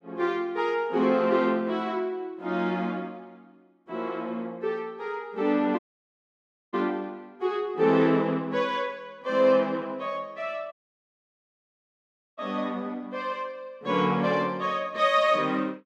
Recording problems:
audio cutting out; at 6 s for 1 s and at 11 s for 1.5 s

